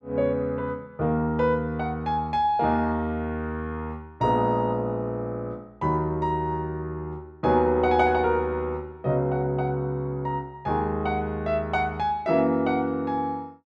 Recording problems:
none

